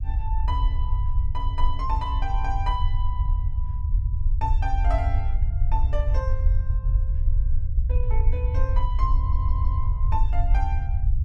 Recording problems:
low-frequency rumble; below 68 Hz, SNR -8 dB
audio stuttering; at 9 s

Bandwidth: 12 kHz